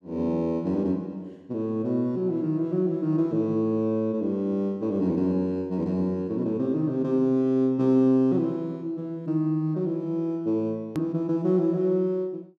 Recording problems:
click at an edit; at 11 s

